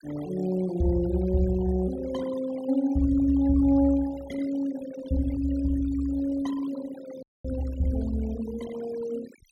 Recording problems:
denoising artefacts; signal-to-artefact ratio 18 dB
audio cutting out; at 7 s

